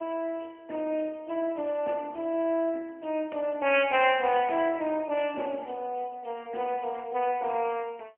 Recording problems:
phone line; 260 Hz to 3.1 kHz, AMR-NB, then MP3

